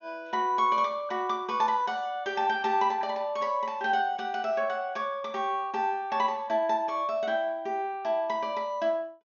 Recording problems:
treble missing; nothing above 6.7 kHz

